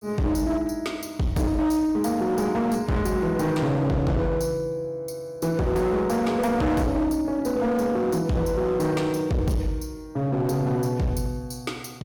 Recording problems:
distorted audio; hard clipping, signal-to-distortion ratio 8 dB

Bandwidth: 17.5 kHz